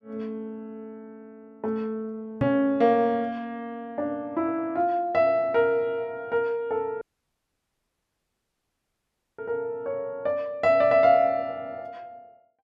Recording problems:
microphone bump; at 2.5 s; peak +1 dB vs average level
audio cutting out; at 7 s for 2.5 s

